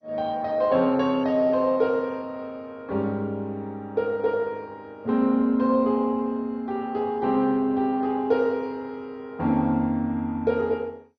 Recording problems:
lossy codec; MP2, log-spectral distance 2 dB, nothing above 5.2 kHz

